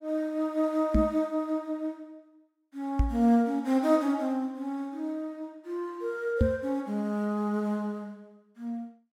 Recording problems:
microphone bump; at 1 s, at 3 s and at 6.5 s; peak +8 dB vs average level

